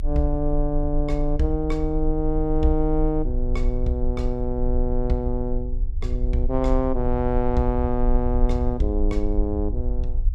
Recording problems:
low-frequency rumble; below 48 Hz, strongest tone 26 Hz, SNR 2 dB

